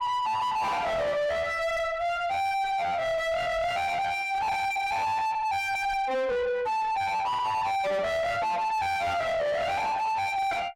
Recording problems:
distortion; soft clipping, signal-to-distortion ratio 6 dB

